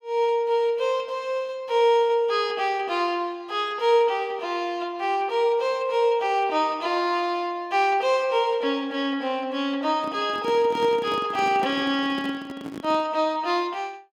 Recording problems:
handling noise; from 10 to 13 s; peak -5 dB vs average level

